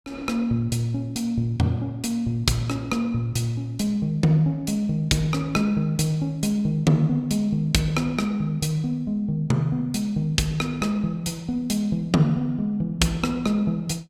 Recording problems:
none

